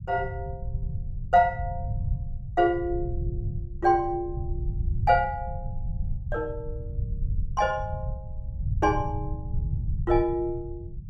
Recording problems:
rumble; below 110 Hz, SNR 7 dB

